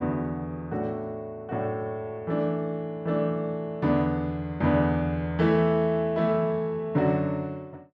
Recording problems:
none

